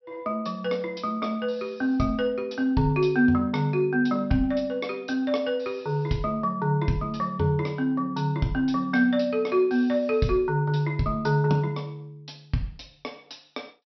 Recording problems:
treble cut off; nothing above 5.7 kHz

